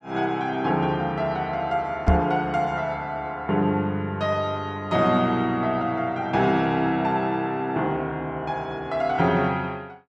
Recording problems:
knock on the microphone; at 2 s; peak +8 dB vs average level

